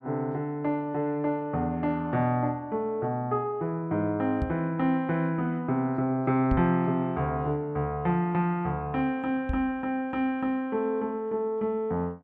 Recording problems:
microphone bump; at 4.5 s, at 6.5 s and at 9.5 s; peak +2 dB vs average level

